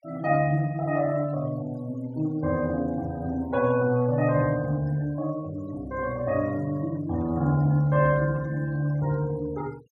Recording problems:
denoising artefacts; signal-to-artefact ratio 23 dB

